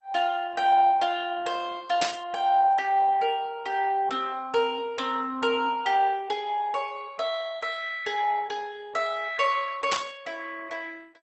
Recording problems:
lossy compression; Opus, then MP2, log-spectral distance 4 dB, nothing above 8 kHz
burst of static; at 2 s and at 10 s; peak +2 dB vs average level

